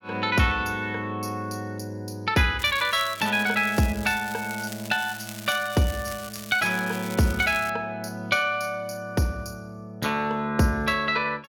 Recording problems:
crackling; from 2.5 to 7.5 s; loose cable, SNR 14 dB

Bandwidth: 17 kHz